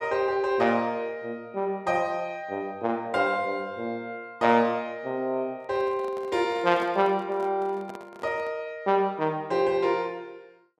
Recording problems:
handling noise; from 5.5 to 8.5 s; peak -8 dB vs average level

